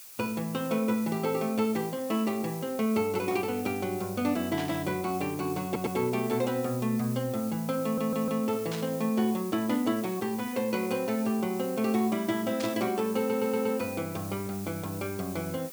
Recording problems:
hiss; slope +2 dB per octave, SNR 14 dB
static burst; at 4.5 s, at 8.5 s and at 13 s; peak -4 dB vs average level
stutter; at 5.5 s, at 8 s and at 13 s

